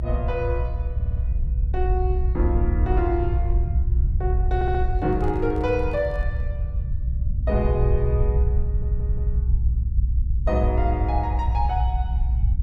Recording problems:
rumble; below 72 Hz, SNR -3 dB
audio stuttering; at 1 s, at 4.5 s and at 8.5 s
handling noise; from 5 to 6.5 s; peak -11 dB vs average level

